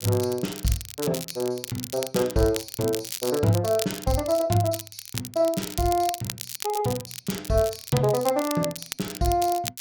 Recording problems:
crackling; vinyl, SNR 9 dB

